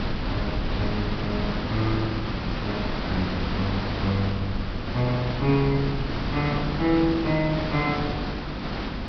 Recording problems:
low-pass filter; nothing above 5.5 kHz
electrical hum; 50 Hz, harmonics up to 350 Hz, SNR 13 dB
hiss; SNR 3 dB
wind on the microphone; below 78 Hz, SNR 9 dB

